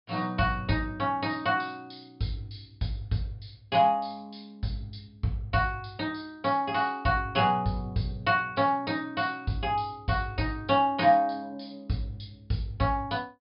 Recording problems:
treble missing; nothing above 5.5 kHz

